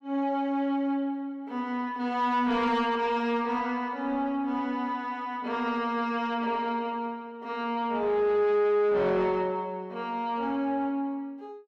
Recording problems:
distorted audio; soft clipping, signal-to-distortion ratio 10 dB

